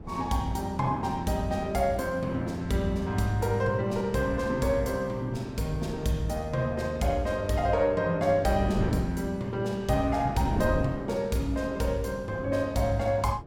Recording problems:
wind on the microphone; below 320 Hz, SNR 11 dB

